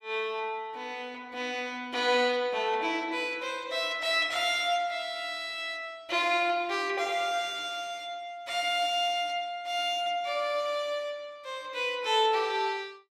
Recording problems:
none

